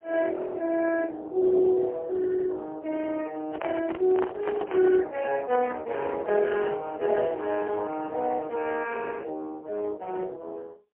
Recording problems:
phone line; 260 Hz to 3.5 kHz, AMR-NB, then MP3
handling noise; from 3.5 to 5 s; peak -4 dB vs average level

